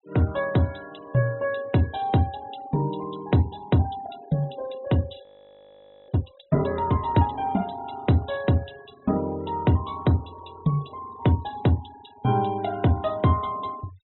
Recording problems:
treble missing; nothing above 3.9 kHz
noise reduction artefacts; signal-to-artefact ratio 24 dB
audio freezing; at 5 s for 1 s

